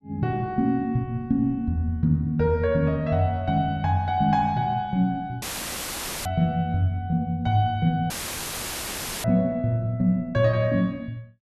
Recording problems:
audio cutting out; at 5.5 s for 1 s and at 8 s for 1 s; filled with static

